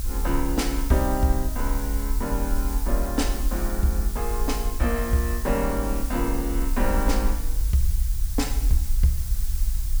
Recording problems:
background hiss; slope +1 dB per octave, SNR 9 dB
rumble; below 50 Hz, SNR 1 dB

